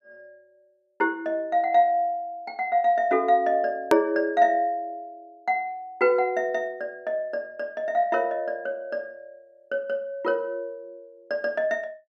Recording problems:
edit click; at 4 s

